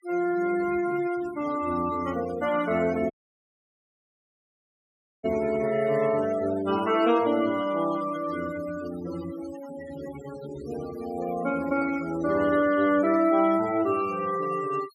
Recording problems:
noise reduction artefacts; signal-to-artefact ratio 15 dB
dropout; at 3 s for 2 s

